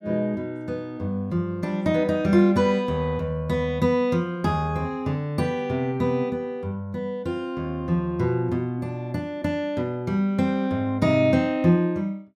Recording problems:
none

